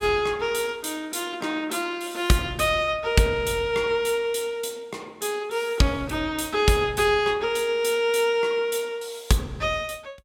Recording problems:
none

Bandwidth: 16.5 kHz